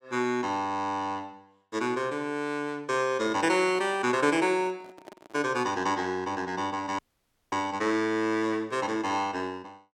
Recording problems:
microphone handling noise; from 3 to 5.5 s; peak -11 dB vs average level
dropout; at 7 s for 0.5 s

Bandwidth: 17.5 kHz